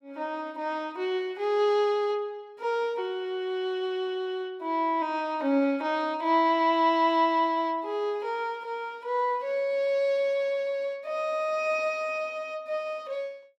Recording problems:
none

